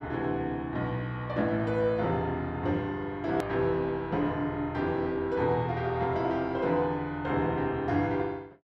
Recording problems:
hard cut with a click; at 3.5 s

